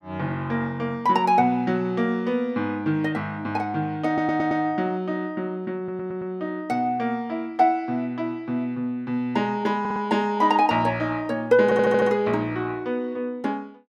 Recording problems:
audio stuttering; 4 times, first at 4 s

